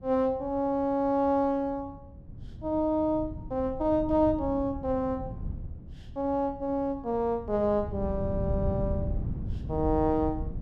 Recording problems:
wind on the microphone; below 150 Hz, SNR 9 dB

